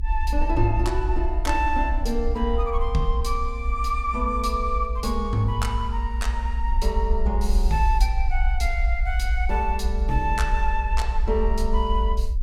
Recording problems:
rumble; below 56 Hz, SNR 0 dB

